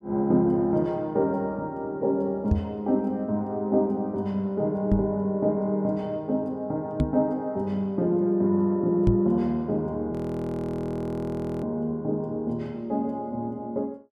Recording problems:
microphone thump; 4 times, first at 2.5 s; peak +7 dB vs average level
frozen audio; at 10 s for 1.5 s

